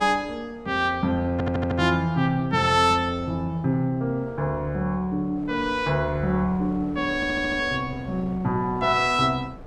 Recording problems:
wind noise; below 540 Hz, SNR 20 dB
stutter; at 1.5 s and at 7 s

